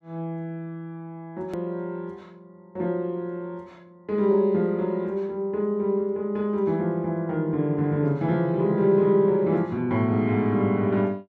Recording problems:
hard cut with a click; at 1.5 s

